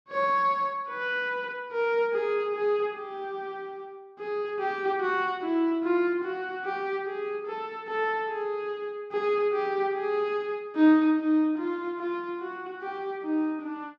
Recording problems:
none

